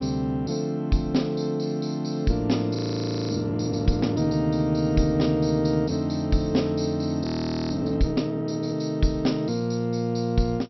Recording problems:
treble missing; nothing above 5.7 kHz
audio freezing; at 3 s for 0.5 s and at 7 s

